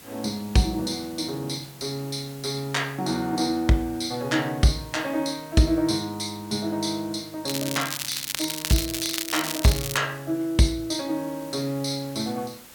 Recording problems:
background hiss; slope -2 dB per octave, SNR 19 dB
crackling; from 7.5 to 10 s; loose cable, SNR 3 dB

